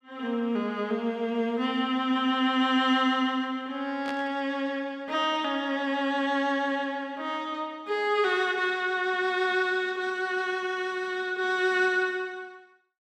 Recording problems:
static burst; at 4 s; peak -7 dB vs average level

